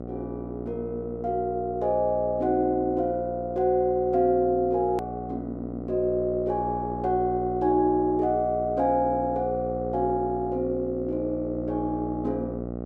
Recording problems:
hum; 60 Hz, harmonics up to 840 Hz, SNR 9 dB
click at an edit; at 5 s

